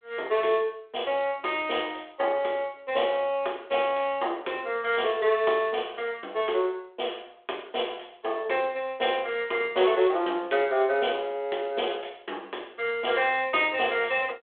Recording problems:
telephone audio; 320 Hz to 3.5 kHz, G.726

